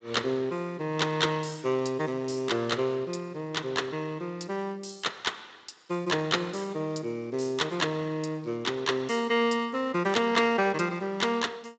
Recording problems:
lossy compression; Speex, log-spectral distance 4 dB, nothing above 7.6 kHz

